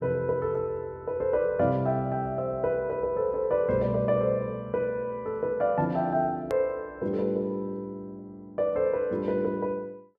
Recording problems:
click at an edit; at 6.5 s

